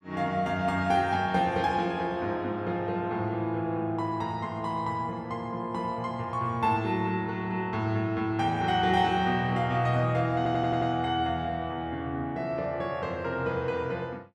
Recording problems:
audio stuttering; at 10 s

